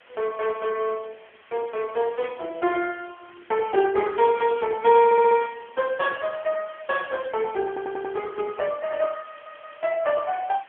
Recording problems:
telephone audio; 280 Hz to 2.8 kHz, AMR-NB
background hiss; SNR 27 dB
stutter; at 5 s, at 7.5 s and at 9.5 s

